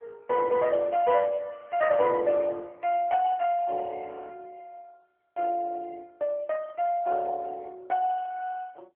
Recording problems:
telephone audio; 340 Hz to 3 kHz, AMR-NB

